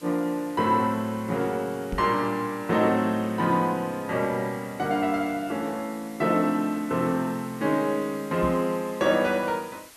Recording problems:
background hiss; slope 0 dB per octave, SNR 22 dB
knock on the microphone; at 2 s and at 8.5 s; peak -2 dB vs average level

